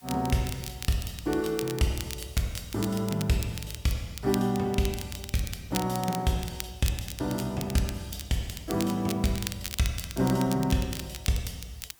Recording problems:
hiss; SNR 26 dB
crackle; vinyl, SNR 10 dB

